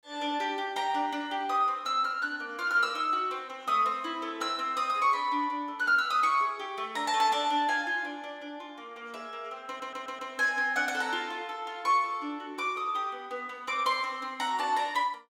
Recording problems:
audio stuttering; at 9.5 s

